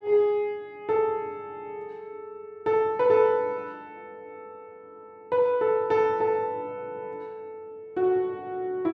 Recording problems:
none

